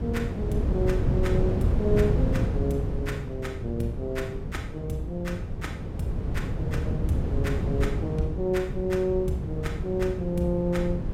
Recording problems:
wind noise; below 170 Hz, SNR -1 dB

